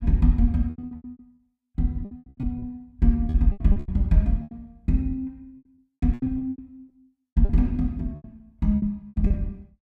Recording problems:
lost packets; 19% of the sound replaced, filled with repeated pitch periods

